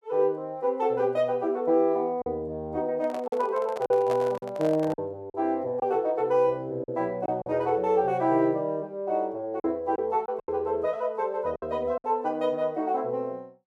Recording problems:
packet loss; 5% of the sound replaced, filled with silence
microphone handling noise; from 3 to 5 s; peak -3 dB vs average level

